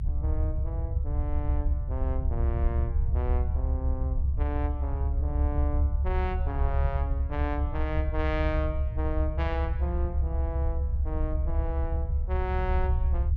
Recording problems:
low-frequency rumble; below 72 Hz, strongest tone 66 Hz, SNR -7 dB

